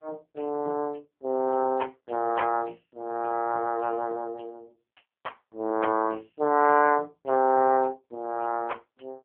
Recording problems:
phone line; 190 Hz to 2.6 kHz, AMR-NB

